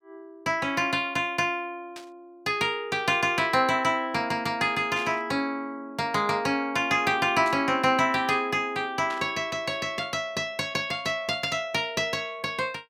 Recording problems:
static burst; 5 times, first at 2 s; peak -9 dB vs average level

